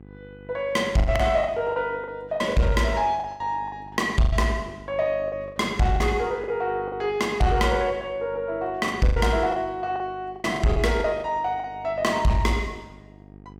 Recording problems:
distorted audio; soft clipping, signal-to-distortion ratio 11 dB
electrical hum; 50 Hz, harmonics up to 850 Hz, SNR 21 dB
packet loss; 11% of the sound replaced, filled with the last packet

